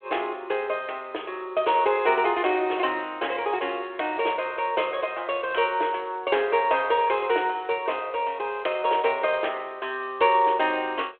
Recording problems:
phone line; 320 Hz to 3.4 kHz, G.726

